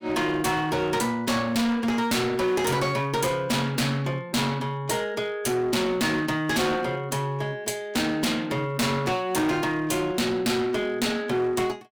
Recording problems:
distorted audio; hard clipping, uneven, signal-to-distortion ratio 6 dB

